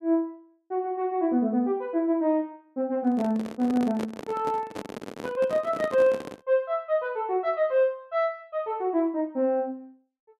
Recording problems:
handling noise; from 3 to 6.5 s; peak -4 dB vs average level

